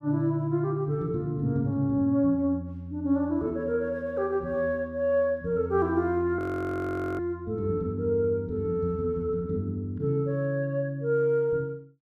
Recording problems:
frozen audio; at 6.5 s for 1 s

